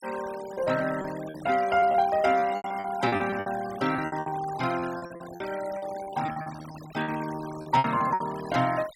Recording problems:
denoising artefacts; signal-to-artefact ratio 15 dB
lost packets; 15% of the sound replaced, filled with repeated pitch periods

